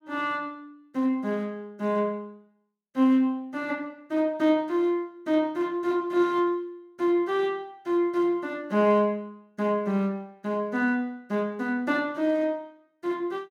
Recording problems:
none

